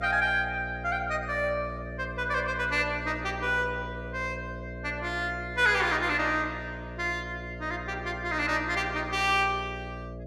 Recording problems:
mains hum; 60 Hz, harmonics up to 660 Hz, SNR 11 dB

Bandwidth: 13 kHz